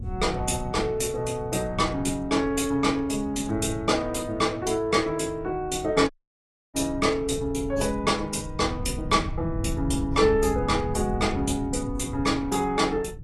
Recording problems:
lossy compression; AAC, log-spectral distance 3 dB, nothing above 11.6 kHz
wind noise; below 140 Hz, SNR 11 dB
dropout; at 6 s for 0.5 s

